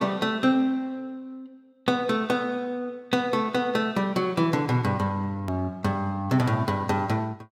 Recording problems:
hard cut with a click; at 5.5 s

